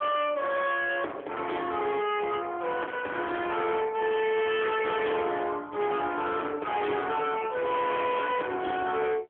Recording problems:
phone line; 280 Hz to 3.4 kHz, AMR-NB
distortion; soft clipping, signal-to-distortion ratio 7 dB

